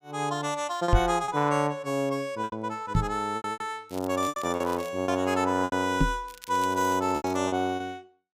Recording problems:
packet loss; 9% of the sound replaced, filled with repeated pitch periods
knock on the microphone; at 1 s, at 3 s and at 6 s; peak +8 dB vs average level
crackling; from 4 to 5 s and from 6.5 to 7.5 s; loose cable, SNR 19 dB

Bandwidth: 15.5 kHz